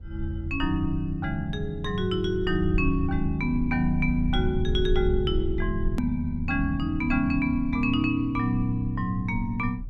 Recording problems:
rumble; below 62 Hz, SNR 9 dB
edit click; at 6 s

